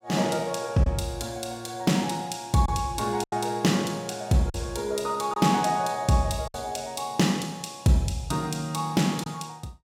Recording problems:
lost packets; 3% of the sound replaced, filled with silence

